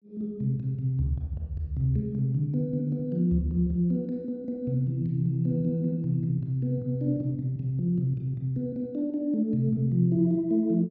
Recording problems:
none

